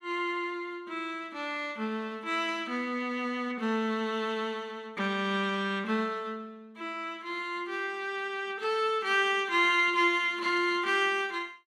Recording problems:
none

